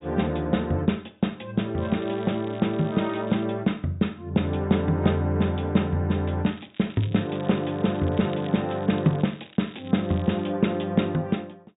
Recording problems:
treble cut off; nothing above 4 kHz
crackling; from 2 to 3.5 s and from 6.5 to 10 s; loose cable, SNR 22 dB

